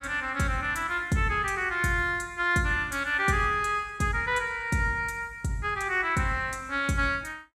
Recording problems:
none

